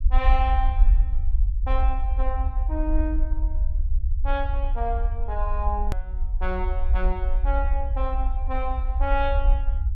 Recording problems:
low-frequency rumble; below 54 Hz, SNR -5 dB
hard cut with a click; at 6 s

